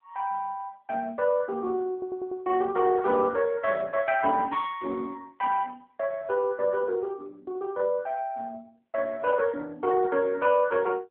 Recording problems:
telephone audio; 260 Hz to 3.9 kHz, AMR-NB
audio stuttering; at 2 s

